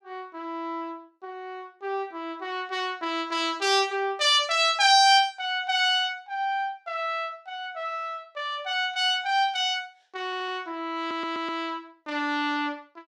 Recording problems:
stutter; at 10 s and at 11 s

